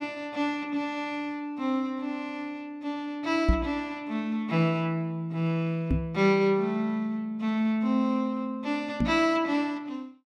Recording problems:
microphone bump; at 3.5 s, at 6 s and at 9 s; peak +8 dB vs average level

